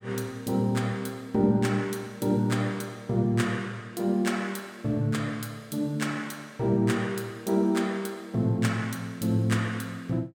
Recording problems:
none

